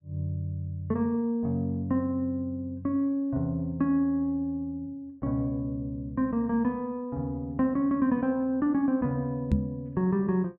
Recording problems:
microphone thump; at 9.5 s; peak +8 dB vs average level

